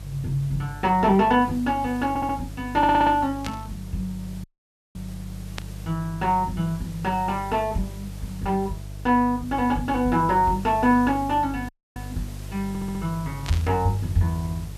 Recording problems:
hum; 50 Hz, harmonics up to 350 Hz, SNR 14 dB
hiss; slope -3 dB per octave, SNR 23 dB
audio stuttering; at 2 s, at 3 s and at 13 s
static burst; at 3.5 s, at 5.5 s and at 13 s; peak -5 dB vs average level
audio cutting out; at 4.5 s for 0.5 s and at 12 s

